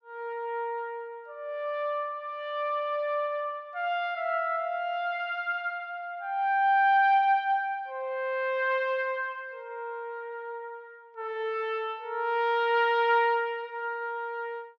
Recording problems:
none

